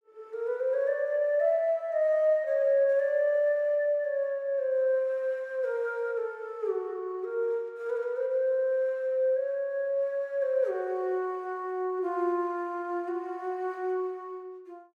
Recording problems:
none

